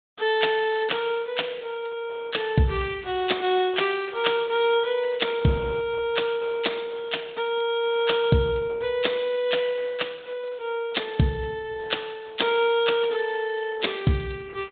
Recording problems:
treble cut off; nothing above 3.7 kHz
lossy compression; Opus, log-spectral distance 4 dB

